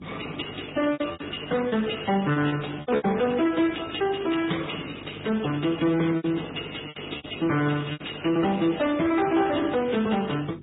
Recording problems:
treble missing; nothing above 3.8 kHz
codec artefacts; Speex, then MP3, log-spectral distance 9 dB
distortion; soft clipping, signal-to-distortion ratio 11 dB
hum; 50 Hz, harmonics up to 450 Hz, SNR 18 dB
packet loss; 7% of the sound replaced, filled with repeated pitch periods

